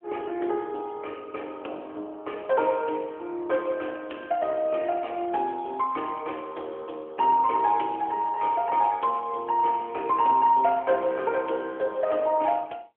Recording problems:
telephone audio; 280 Hz to 3.4 kHz, AMR-NB

